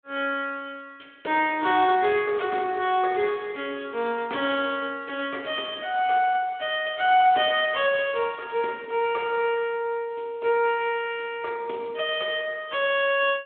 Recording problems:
phone line; 280 Hz to 3.7 kHz, Speex

